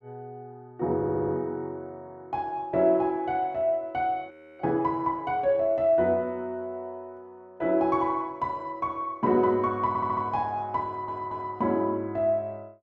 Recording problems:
stutter; at 1 s, at 10 s and at 11 s
frozen audio; at 4.5 s

